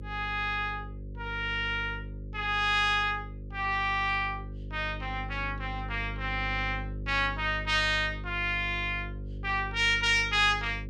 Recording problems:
hum; 50 Hz, harmonics up to 550 Hz, SNR 11 dB

